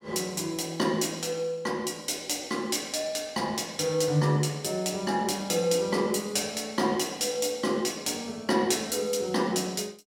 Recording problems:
none

